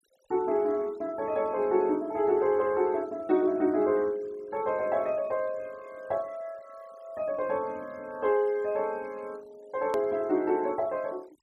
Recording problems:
noise reduction artefacts; signal-to-artefact ratio 28 dB
hard cut with a click; at 10 s

